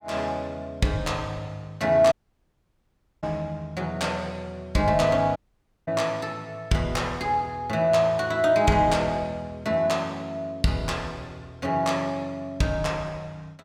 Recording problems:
audio cutting out; at 2 s for 1 s and at 5.5 s for 0.5 s

